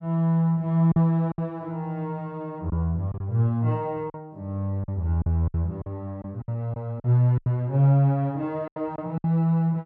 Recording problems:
packet loss; 8% of the sound replaced, filled with silence

